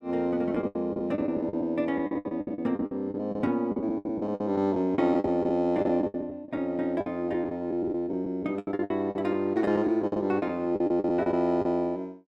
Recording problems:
lost packets; 17% of the sound replaced, filled with the last packet

